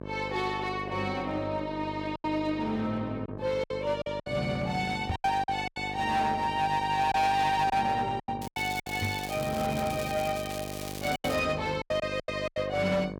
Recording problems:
distortion; hard clipping, uneven, signal-to-distortion ratio 10 dB
hum; 50 Hz, harmonics up to 1.6 kHz, SNR 10 dB
lost packets; 8% of the sound replaced, filled with silence
microphone bump; at 5 s and at 9 s; peak +2 dB vs average level
crackling; from 8.5 to 11 s; loose cable, SNR 12 dB

